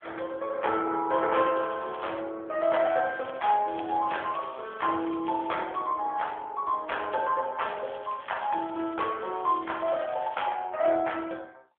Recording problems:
phone line; 280 Hz to 3.5 kHz, AMR-NB
crackling; at 1.5 s, from 2.5 to 5.5 s and from 7.5 to 10 s; loose cable, SNR 21 dB

